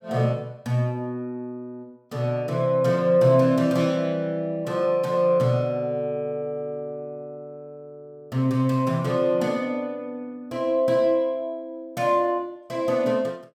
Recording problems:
none

